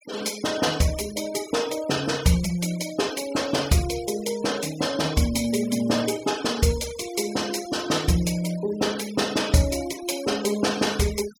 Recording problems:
denoising artefacts; signal-to-artefact ratio 15 dB

